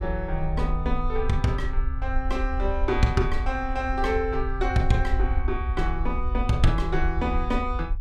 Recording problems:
low-frequency rumble; below 58 Hz, SNR 3 dB

